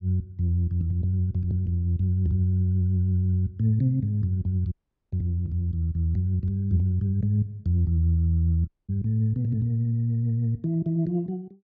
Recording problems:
audio cutting out; at 4.5 s and at 8.5 s

